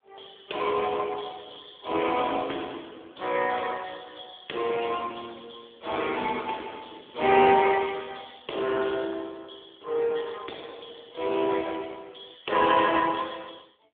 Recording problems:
phone line; 280 Hz to 3.5 kHz, AMR-NB

